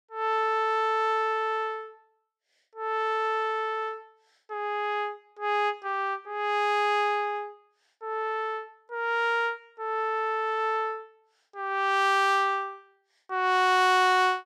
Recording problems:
none

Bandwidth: 16.5 kHz